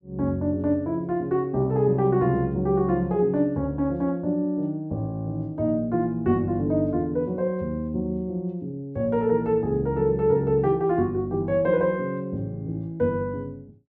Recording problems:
none

